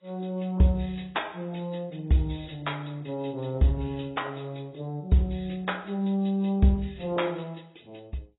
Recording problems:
codec artefacts; AAC, log-spectral distance 5 dB, nothing above 3.8 kHz

